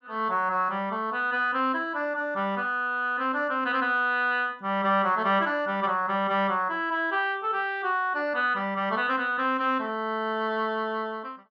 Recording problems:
none

